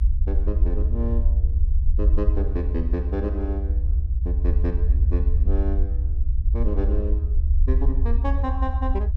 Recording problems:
low-frequency rumble; below 70 Hz, SNR -8 dB

